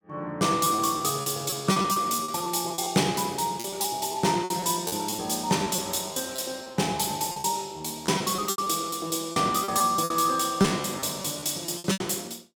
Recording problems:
lost packets; 13% of the sound replaced, filled with repeated pitch periods

